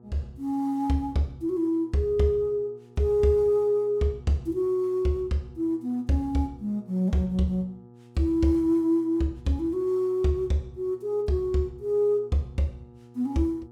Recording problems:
hum; 60 Hz, harmonics up to 1.3 kHz, SNR 25 dB

